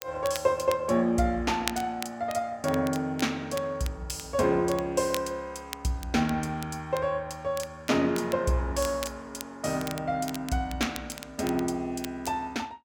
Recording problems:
crackle; vinyl, SNR 14 dB

